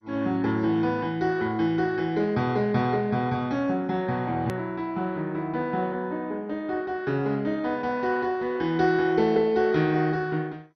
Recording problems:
lossy codec; MP2, log-spectral distance 2 dB, nothing above 13.3 kHz
edit click; at 4.5 s

